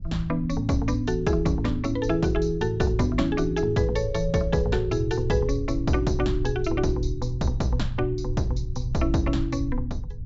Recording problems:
treble missing; nothing above 8 kHz
rumble; below 76 Hz, SNR 9 dB

